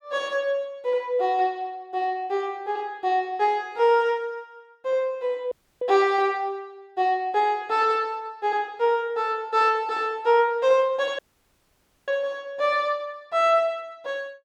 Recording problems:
dropout; at 5.5 s and at 11 s for 1 s

